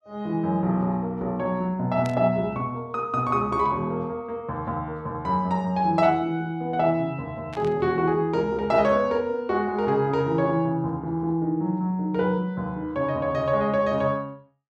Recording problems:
burst of static; at 2 s and at 7.5 s; peak -11 dB vs average level

